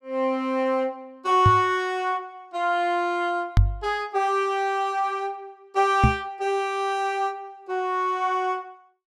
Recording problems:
knock on the microphone; at 1.5 s, at 3.5 s and at 6 s; peak +9 dB vs average level

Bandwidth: 14.5 kHz